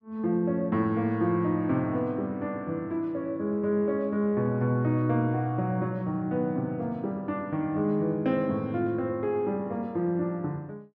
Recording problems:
none

